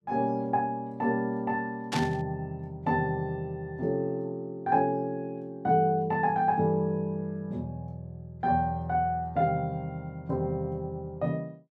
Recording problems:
burst of static; at 2 s; peak 0 dB vs average level

